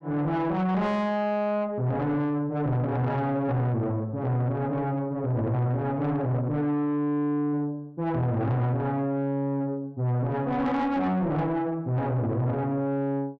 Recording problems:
distorted audio; soft clipping, signal-to-distortion ratio 10 dB

